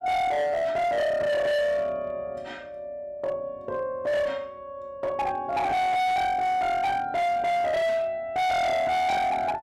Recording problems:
distorted audio; hard clipping, signal-to-distortion ratio 7 dB

